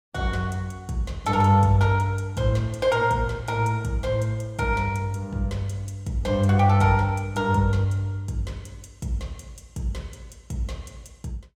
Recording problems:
none

